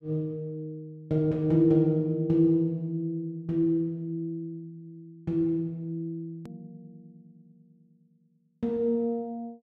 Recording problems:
edit click; at 6.5 s

